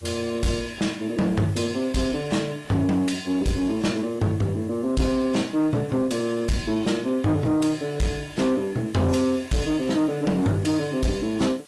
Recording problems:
lossy compression; AAC, log-spectral distance 4 dB, nothing above 11.3 kHz
distorted audio; soft clipping, signal-to-distortion ratio 10 dB
background hiss; slope 0 dB per octave, SNR 25 dB

